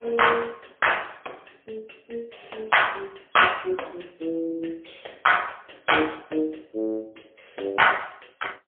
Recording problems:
phone line; 280 Hz to 3.3 kHz, AMR-NB, then MP3

